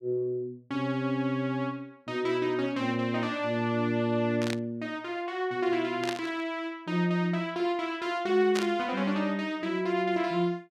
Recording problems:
static burst; at 4.5 s, at 6 s and at 8.5 s; peak -1 dB vs average level

